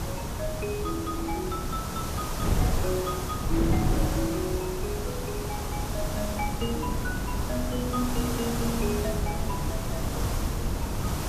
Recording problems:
background hiss; SNR 2 dB
wind on the microphone; below 190 Hz, SNR -2 dB

